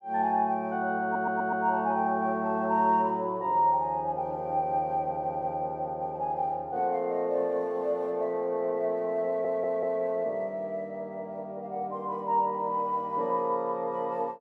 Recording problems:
stutter; at 1 s, at 5 s and at 9.5 s

